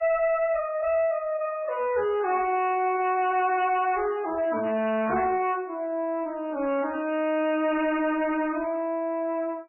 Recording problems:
lossy codec; MP3, then MP3, log-spectral distance 2 dB, nothing above 2.6 kHz
distorted audio; soft clipping, signal-to-distortion ratio 10 dB

